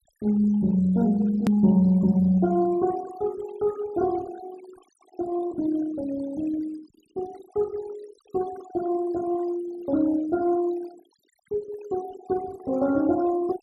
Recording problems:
denoising artefacts; signal-to-artefact ratio 20 dB
hard cut with a click; at 1.5 s

